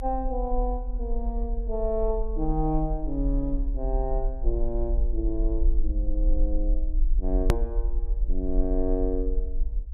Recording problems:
low-frequency rumble; below 42 Hz, SNR -2 dB
hard cut with a click; at 7.5 s

